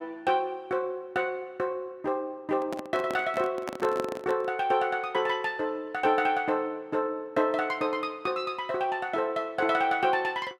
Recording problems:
handling noise; from 2.5 to 4.5 s; peak -2 dB vs average level

